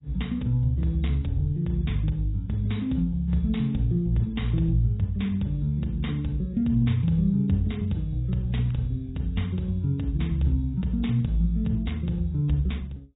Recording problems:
lossy compression; AAC, log-spectral distance 2 dB, nothing above 3.8 kHz

